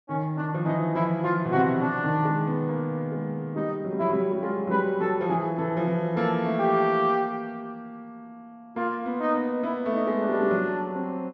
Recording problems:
low-pass filter; nothing above 8 kHz

